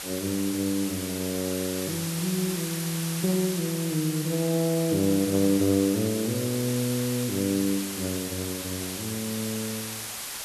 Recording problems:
hiss; slope +1 dB per octave, SNR 5 dB

